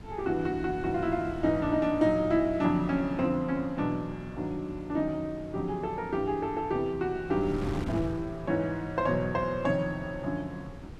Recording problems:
wind on the microphone; below 290 Hz, SNR 13 dB

